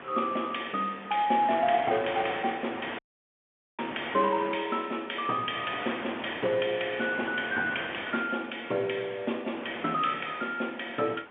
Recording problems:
telephone audio; 240 Hz to 3.4 kHz, G.711
wind noise; below 2.3 kHz, SNR 11 dB
dropout; at 3 s for 1 s

